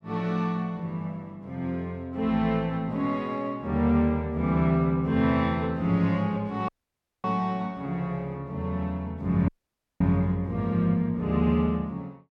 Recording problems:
audio cutting out; at 6.5 s for 0.5 s and at 9.5 s for 0.5 s

